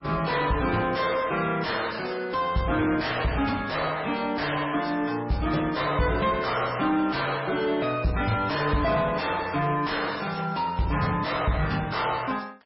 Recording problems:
lossy compression; MP3, log-spectral distance 6 dB, nothing above 5.5 kHz
distortion; soft clipping, signal-to-distortion ratio 7 dB

